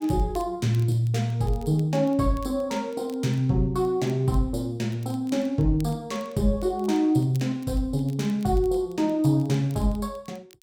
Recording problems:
crackle; vinyl, SNR 29 dB

